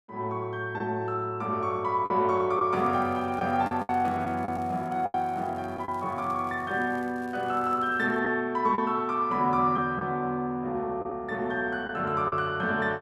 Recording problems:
lost packets; 4% of the sound replaced, filled with the last packet
crackle; from 2.5 to 8 s; loose cable, SNR 30 dB

